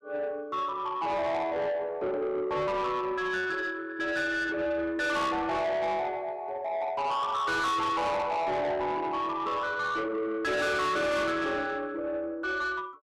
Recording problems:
distorted audio; soft clipping, signal-to-distortion ratio 8 dB

